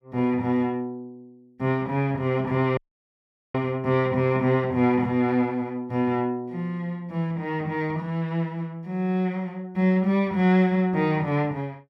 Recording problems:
dropout; at 3 s for 1 s

